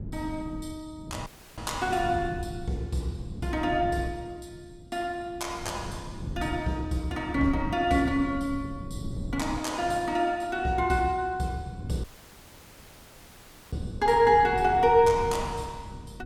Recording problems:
wind noise; below 190 Hz, SNR 12 dB
dropout; at 1.5 s and at 12 s for 1.5 s

